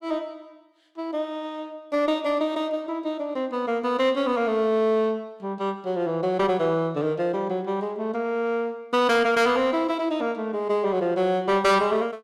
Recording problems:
distorted audio; soft clipping, signal-to-distortion ratio 11 dB

